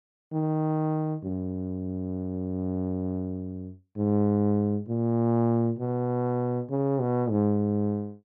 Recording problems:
none

